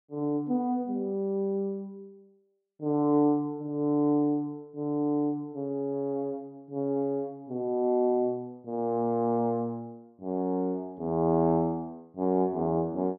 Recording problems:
none

